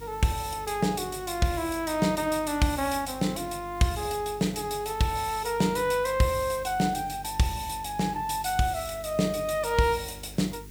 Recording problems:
electrical hum; 50 Hz, harmonics up to 450 Hz, SNR 19 dB
hiss; slope +1 dB per octave, SNR 23 dB

